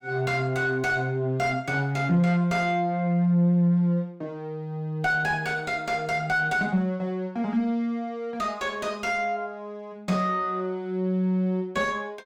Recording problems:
distortion; soft clipping, signal-to-distortion ratio 10 dB

